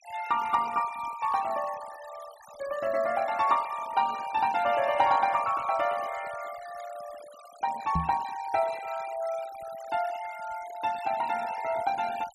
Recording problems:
noise reduction artefacts; signal-to-artefact ratio 17 dB
knock on the microphone; at 8 s; peak +2 dB vs average level

